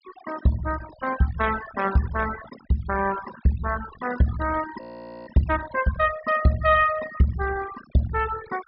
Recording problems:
low-pass filter; nothing above 5.3 kHz
noise reduction artefacts; signal-to-artefact ratio 13 dB
frozen audio; at 5 s

